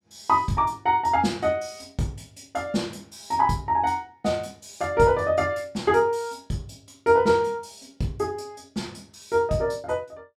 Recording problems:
none

